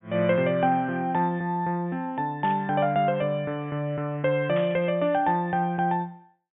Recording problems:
low-pass filter; nothing above 3.5 kHz
static burst; at 2.5 s and at 4.5 s; peak -8 dB vs average level

